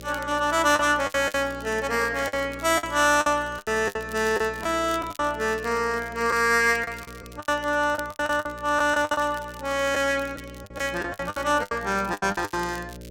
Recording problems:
hum; 60 Hz, harmonics up to 600 Hz, SNR 19 dB
crackling; vinyl, SNR 22 dB
packet loss; 12% of the sound replaced, filled with the last packet

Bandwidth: 16.5 kHz